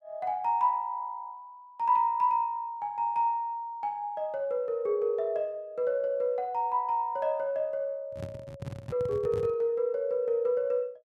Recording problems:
handling noise; from 8 to 9.5 s; peak -4 dB vs average level

